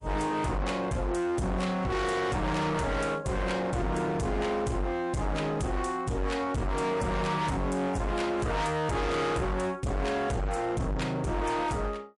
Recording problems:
lossy compression; MP3, log-spectral distance 2 dB, nothing above 11 kHz
distorted audio; hard clipping, signal-to-distortion ratio 6 dB

